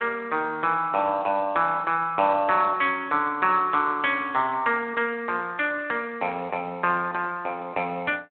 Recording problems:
telephone audio; 190 Hz to 3.6 kHz, Speex

